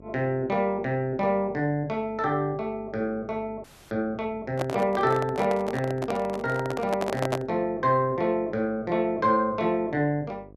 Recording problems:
hum; 50 Hz, harmonics up to 750 Hz, SNR 23 dB
frozen audio; at 3.5 s
handling noise; from 4.5 to 7.5 s; peak +2 dB vs average level

